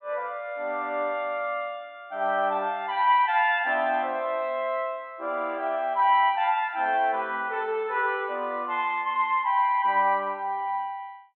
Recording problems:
low-pass filter; nothing above 4 kHz

